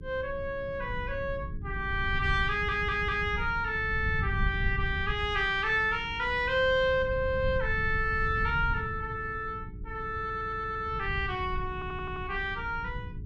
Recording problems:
electrical hum; 60 Hz, harmonics up to 420 Hz, SNR 21 dB
rumble; below 110 Hz, SNR 8 dB
stutter; at 2.5 s, at 10 s and at 12 s

